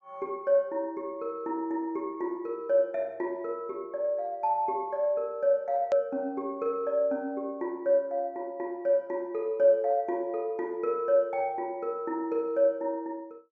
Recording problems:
treble missing; nothing above 8 kHz
click at an edit; at 6 s

